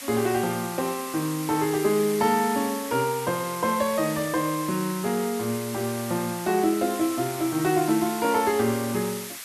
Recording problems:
hiss; SNR 10 dB

